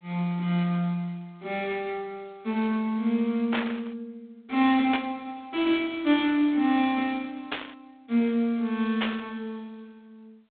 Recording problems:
telephone audio; 190 Hz to 3.9 kHz, G.726
burst of static; 4 times, first at 3.5 s; peak +2 dB vs average level

